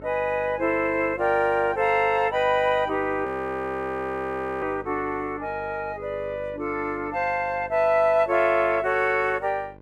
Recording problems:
hum; 50 Hz, harmonics up to 1.6 kHz, SNR 21 dB
frozen audio; at 3.5 s for 1.5 s

